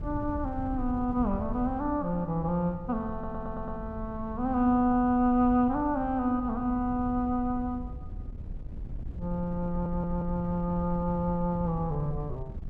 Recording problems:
wind noise; below 98 Hz, SNR 11 dB
stutter; at 3 s and at 9.5 s

